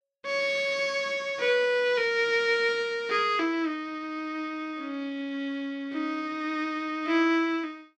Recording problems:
none

